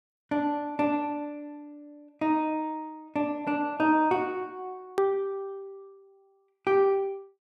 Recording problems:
hard cut with a click; at 5 s

